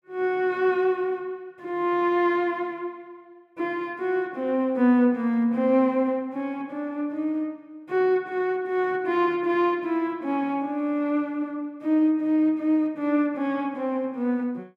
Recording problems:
none

